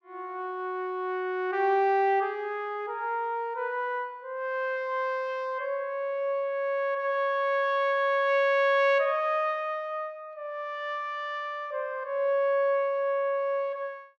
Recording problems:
none

